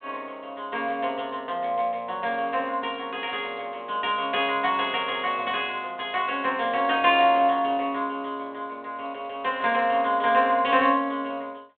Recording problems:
phone line; 300 Hz to 3.5 kHz, G.726

